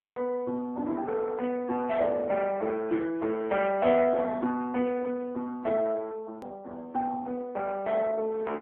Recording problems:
telephone audio; 260 Hz to 2.6 kHz, AMR-NB
edit click; at 6.5 s

